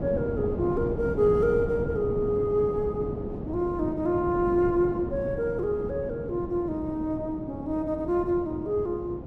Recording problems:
wind on the microphone; below 360 Hz, SNR 7 dB

